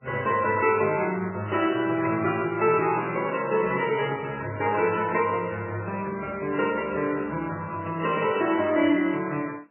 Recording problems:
lossy compression; AAC, then MP3, log-spectral distance 4 dB, nothing above 2.7 kHz

